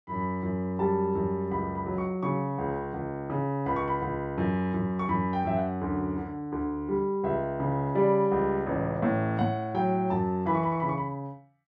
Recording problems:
none

